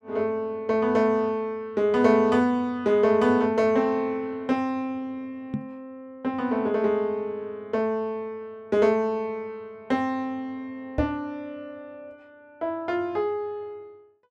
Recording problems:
microphone bump; at 5.5 s and at 11 s; peak 0 dB vs average level

